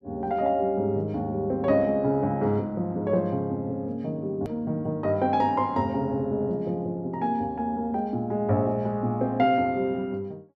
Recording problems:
click at an edit; at 4.5 s

